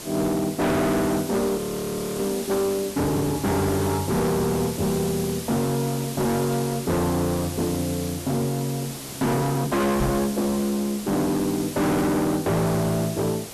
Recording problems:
distortion; hard clipping, signal-to-distortion ratio 6 dB
hiss; SNR 10 dB
audio freezing; at 1.5 s for 0.5 s and at 9 s
knock on the microphone; at 10 s; peak +5 dB vs average level

